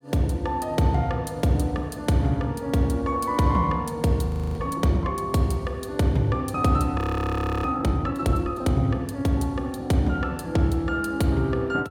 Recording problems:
audio freezing; at 4.5 s and at 7 s for 0.5 s

